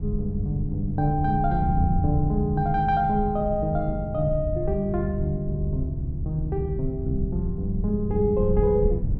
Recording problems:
low-frequency rumble; below 100 Hz, SNR 6 dB

